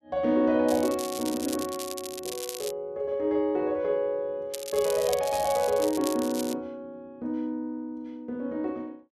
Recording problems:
crackle; from 0.5 to 2.5 s and from 4.5 to 6.5 s; loose cable, SNR 10 dB

